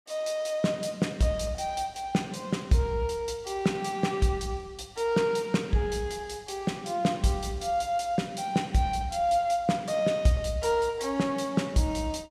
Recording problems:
none

